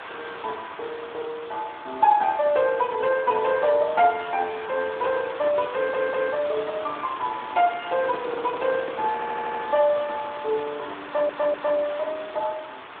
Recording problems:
telephone audio; 300 Hz to 3 kHz, Speex
background hiss; SNR 13 dB
stutter; at 6 s, at 9 s and at 11 s
microphone handling noise; from 7.5 to 10 s; peak -8 dB vs average level

